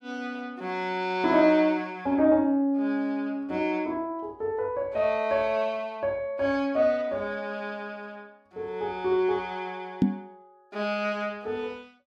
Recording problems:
microphone bump; at 10 s; peak +9 dB vs average level

